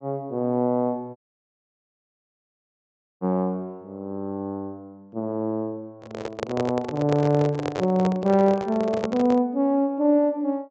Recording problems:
low-pass filter; nothing above 8 kHz
audio cutting out; at 1 s for 2 s
handling noise; from 6 to 9.5 s; peak 0 dB vs average level

